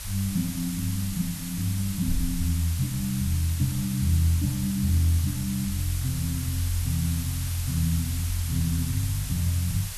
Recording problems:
background hiss; SNR 8 dB
wind on the microphone; below 68 Hz, SNR 16 dB

